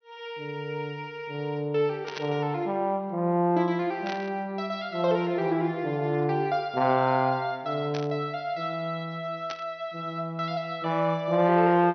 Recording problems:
treble missing; nothing above 6.1 kHz
burst of static; 4 times, first at 2 s; peak -4 dB vs average level

